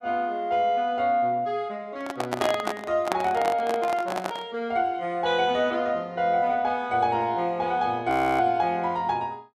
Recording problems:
microphone handling noise; from 2 to 4.5 s; peak +3 dB vs average level
frozen audio; at 8 s

